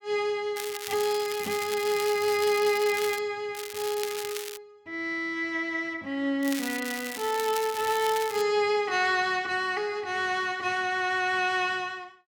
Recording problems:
crackling; from 0.5 to 3 s, from 3.5 to 4.5 s and from 6.5 to 8.5 s; loose cable, SNR 10 dB

